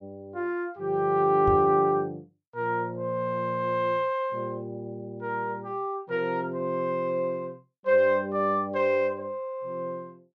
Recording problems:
microphone bump; at 1.5 s; peak -1 dB vs average level

